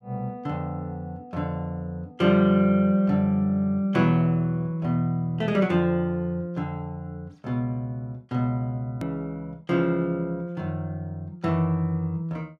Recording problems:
edit click; at 9 s

